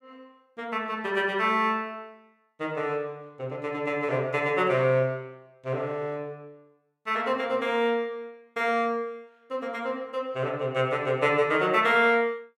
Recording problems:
none

